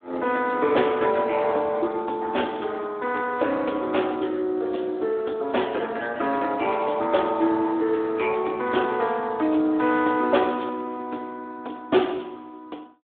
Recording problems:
telephone audio; 260 Hz to 3.6 kHz, Speex

